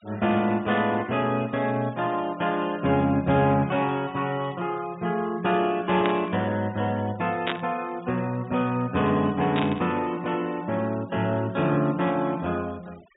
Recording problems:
low-pass filter; nothing above 4 kHz
noise reduction artefacts; signal-to-artefact ratio 24 dB
static burst; at 6 s, at 7.5 s and at 9.5 s; peak +1 dB vs average level

